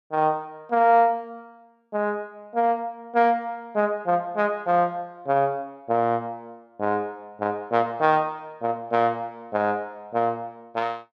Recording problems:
none

